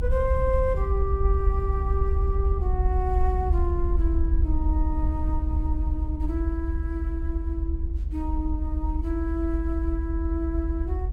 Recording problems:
low-frequency rumble; below 68 Hz, SNR -4 dB

